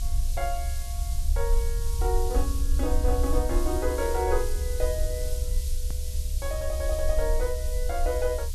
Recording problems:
background hiss; SNR 9 dB
low-frequency rumble; below 66 Hz, strongest tone 22 Hz, SNR -1 dB
click at an edit; at 6 s

